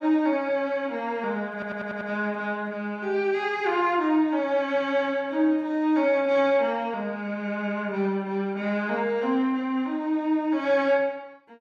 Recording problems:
audio stuttering; at 1.5 s

